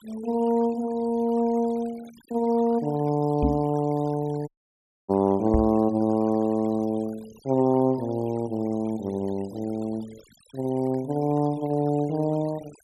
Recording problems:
denoising artefacts; signal-to-artefact ratio 24 dB
microphone thump; at 3.5 s and at 5.5 s; peak +4 dB vs average level
audio cutting out; at 4.5 s for 0.5 s

